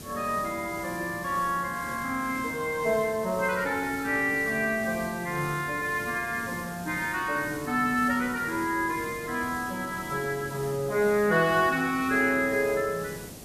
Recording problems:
hiss; SNR 14 dB

